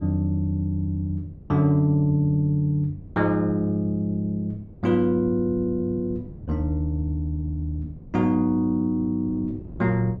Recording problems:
wind noise; below 210 Hz, SNR 19 dB

